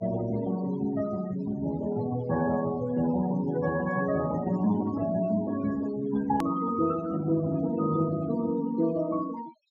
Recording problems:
treble missing; nothing above 8 kHz
noise reduction artefacts; signal-to-artefact ratio 15 dB
edit click; at 6.5 s

